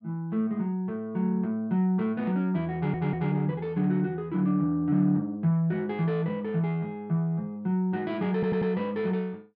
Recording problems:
stutter; at 3 s and at 8.5 s

